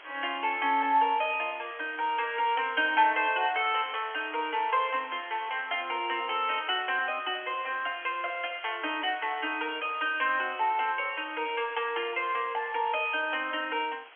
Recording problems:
phone line; 260 Hz to 3.3 kHz, G.711
background hiss; SNR 20 dB

